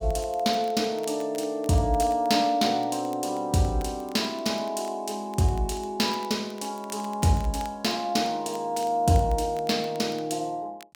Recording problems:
crackle; vinyl, SNR 24 dB

